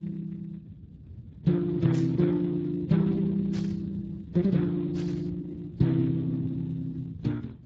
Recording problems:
codec artefacts; Vorbis, then Speex, log-spectral distance 3 dB, nothing above 13.1 kHz
low-frequency rumble; below 190 Hz, SNR 16 dB
burst of static; at 2 s, at 3.5 s and at 5 s; peak -13 dB vs average level

